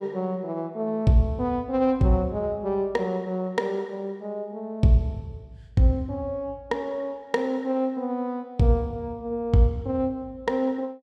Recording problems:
none

